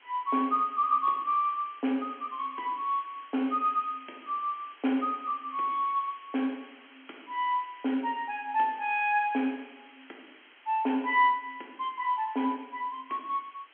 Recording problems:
phone line; 220 Hz to 3.3 kHz, G.711
hiss; SNR 24 dB

